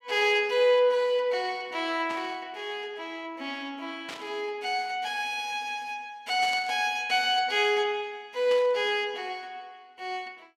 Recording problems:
burst of static; 4 times, first at 2 s; peak -8 dB vs average level

